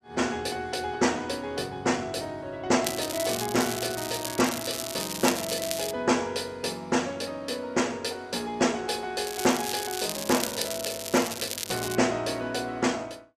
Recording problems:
crackling; from 3 to 6 s and from 9.5 to 12 s; loose cable, SNR 5 dB

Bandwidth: 14 kHz